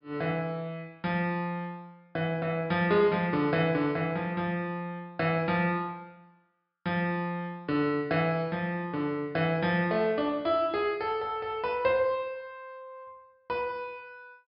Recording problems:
low-pass filter; nothing above 5.5 kHz

